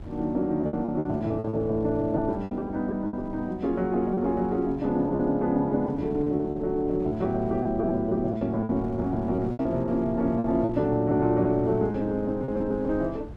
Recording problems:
wind on the microphone; below 190 Hz, SNR 16 dB
packet loss; 10% of the sound replaced, filled with repeated pitch periods

